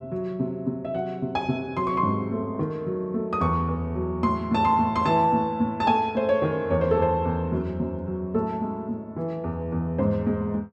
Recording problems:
none

